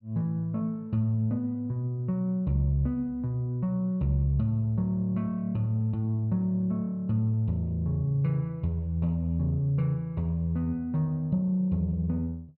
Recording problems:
none

